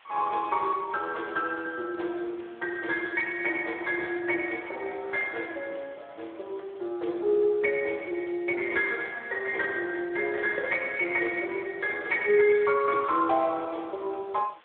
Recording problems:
phone line; 280 Hz to 3.6 kHz, Speex
hiss; SNR 29 dB

